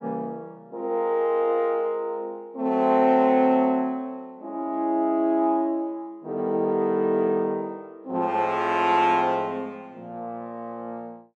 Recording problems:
none

